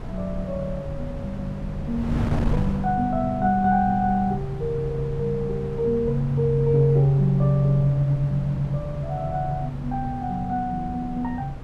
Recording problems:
wind on the microphone; below 190 Hz, SNR 10 dB

